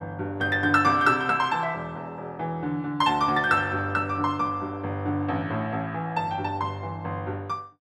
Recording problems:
none

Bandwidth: 14.5 kHz